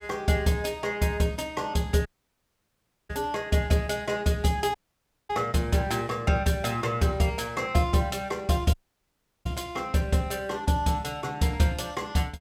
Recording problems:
audio cutting out; at 2 s for 1 s, at 5 s for 0.5 s and at 8.5 s for 0.5 s

